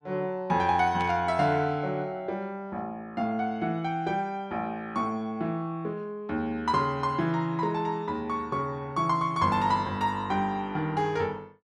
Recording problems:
static burst; at 1 s; peak -8 dB vs average level

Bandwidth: 12 kHz